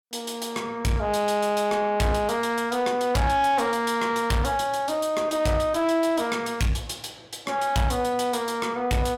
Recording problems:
distorted audio; soft clipping, signal-to-distortion ratio 10 dB

